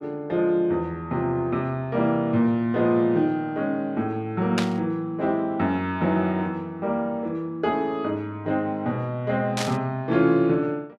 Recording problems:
burst of static; at 4.5 s and at 9.5 s; peak +2 dB vs average level

